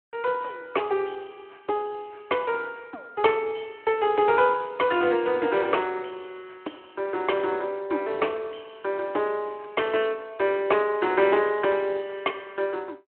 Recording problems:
phone line; 260 Hz to 3.3 kHz, Speex

